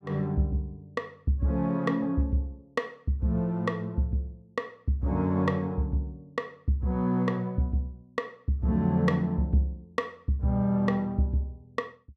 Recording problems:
none

